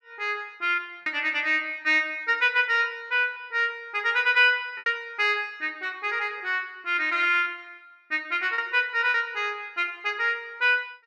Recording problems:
lost packets; 3% of the sound replaced, filled with repeated pitch periods

